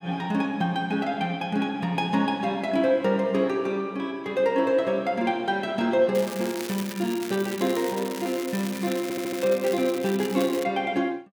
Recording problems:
crackling; from 6 to 11 s; loose cable, SNR 12 dB
stutter; at 9 s

